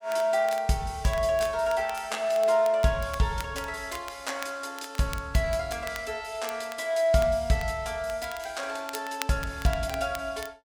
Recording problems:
crackling; vinyl, SNR 17 dB

